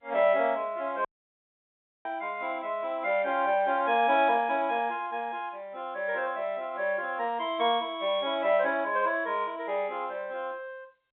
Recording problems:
phone line; 240 Hz to 3.8 kHz, G.711
dropout; at 1 s for 1 s

